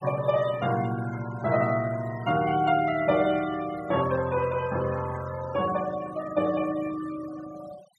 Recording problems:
denoising artefacts; signal-to-artefact ratio 17 dB

